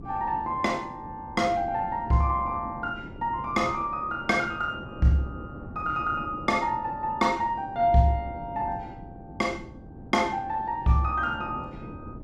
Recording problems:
wind noise; below 310 Hz, SNR 16 dB

